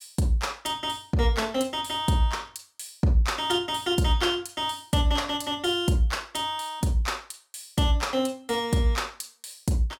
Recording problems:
none

